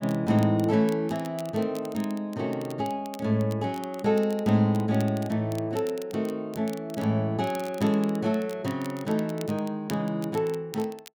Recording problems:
crackling; vinyl, SNR 21 dB

